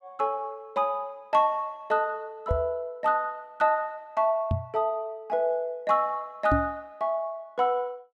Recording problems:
knock on the microphone; at 2.5 s, at 4.5 s and at 6.5 s; peak +5 dB vs average level

